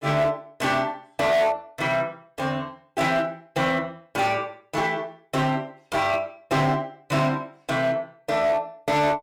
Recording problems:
distortion; hard clipping, signal-to-distortion ratio 10 dB

